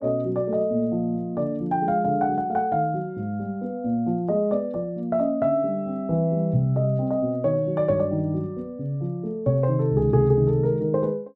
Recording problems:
none

